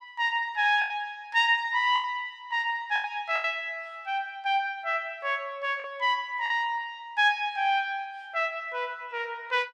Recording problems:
packet loss; 4% of the sound replaced, filled with the last packet

